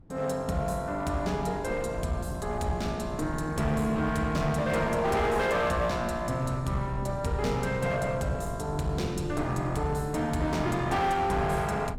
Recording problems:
distortion; hard clipping, uneven, signal-to-distortion ratio 10 dB
wind noise; below 230 Hz, SNR 11 dB

